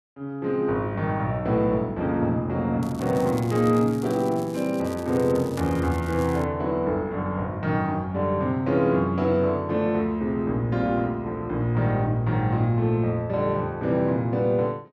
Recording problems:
crackling; from 3 to 6.5 s; loose cable, SNR 21 dB

